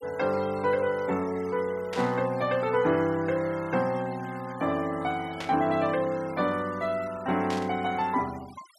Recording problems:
noise reduction artefacts; signal-to-artefact ratio 20 dB
static burst; at 2 s, at 5.5 s and at 7.5 s; peak -5 dB vs average level

